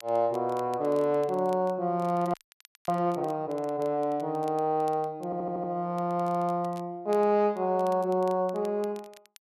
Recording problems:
crackle; vinyl, SNR 27 dB
audio freezing; at 2.5 s for 0.5 s
audio stuttering; at 5.5 s

